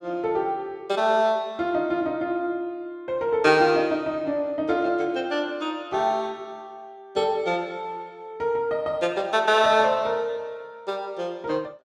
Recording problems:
none

